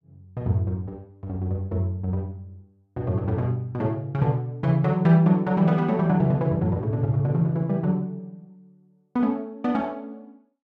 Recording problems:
none

